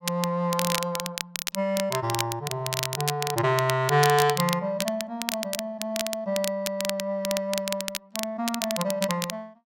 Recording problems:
crackle; vinyl, SNR 4 dB

